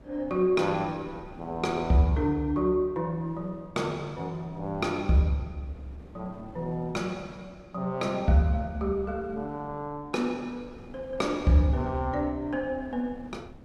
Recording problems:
wind noise; below 330 Hz, SNR 21 dB

